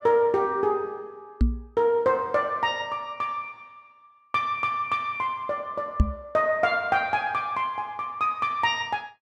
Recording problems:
knock on the microphone; at 1.5 s and at 6 s; peak +9 dB vs average level

